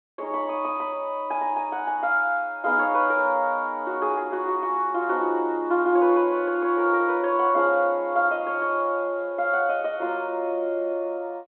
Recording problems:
phone line; 220 Hz to 3.5 kHz, G.726

